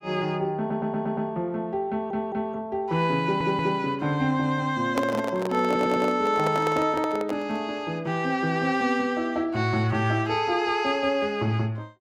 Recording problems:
stutter; 4 times, first at 0.5 s
microphone handling noise; from 5 to 7.5 s; peak +2 dB vs average level

